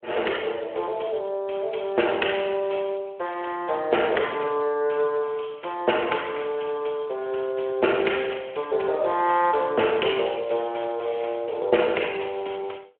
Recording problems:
phone line; 300 Hz to 3.1 kHz, Speex

